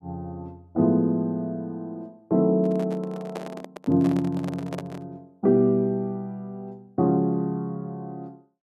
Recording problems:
handling noise; from 2.5 to 5 s; peak -6 dB vs average level

